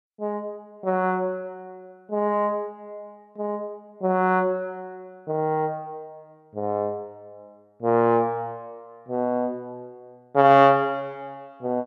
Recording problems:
none

